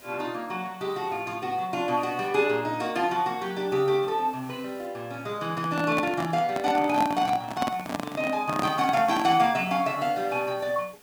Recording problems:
background hiss; slope -3 dB per octave, SNR 25 dB
handling noise; from 5.5 to 9.5 s; peak +1 dB vs average level

